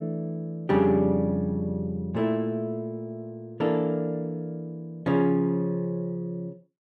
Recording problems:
none

